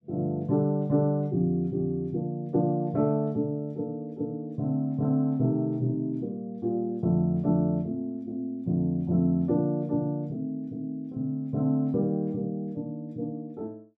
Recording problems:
none

